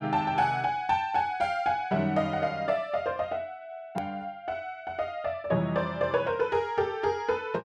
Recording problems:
hard cut with a click; at 4 s

